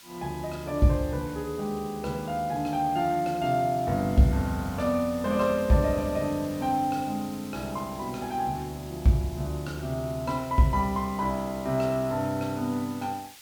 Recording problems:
hiss; slope +2 dB per octave, SNR 19 dB

